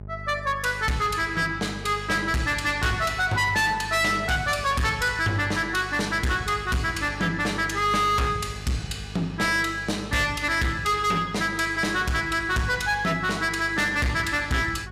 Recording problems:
distorted audio; hard clipping, signal-to-distortion ratio 7 dB
hum; 50 Hz, harmonics up to 800 Hz, SNR 16 dB

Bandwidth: 15 kHz